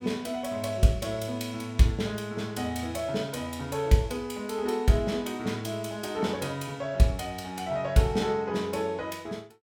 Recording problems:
none

